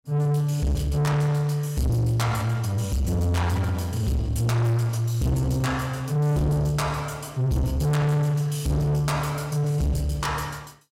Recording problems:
distortion; soft clipping, signal-to-distortion ratio 8 dB

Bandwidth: 16 kHz